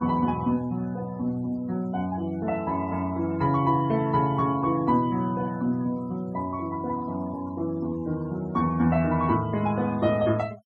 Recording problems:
noise reduction artefacts; signal-to-artefact ratio 23 dB

